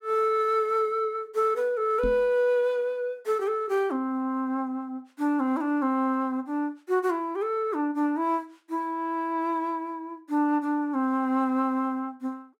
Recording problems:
microphone thump; at 2 s; peak -3 dB vs average level

